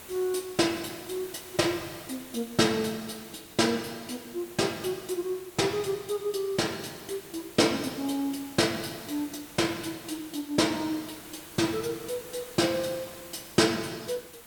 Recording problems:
background hiss; slope -3 dB per octave, SNR 16 dB

